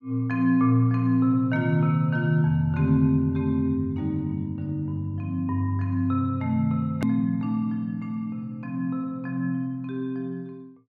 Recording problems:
click at an edit; at 7 s

